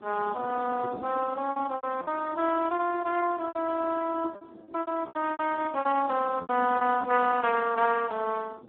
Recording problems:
phone line; 260 Hz to 2.7 kHz, Speex
wind on the microphone; below 490 Hz, SNR 18 dB
packet loss; 16% of the sound replaced, filled with repeated pitch periods

